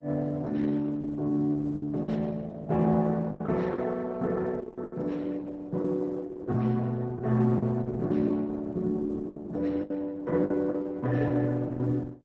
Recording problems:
lossy compression; Opus, then Opus, log-spectral distance 2 dB, nothing above 7.3 kHz
lost packets; 7% of the sound replaced, filled with the last packet

